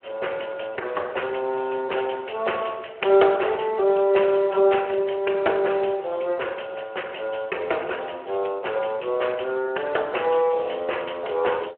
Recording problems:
telephone audio; 320 Hz to 3.1 kHz, Speex

